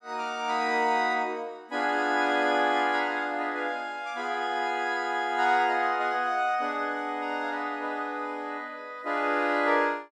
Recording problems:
none

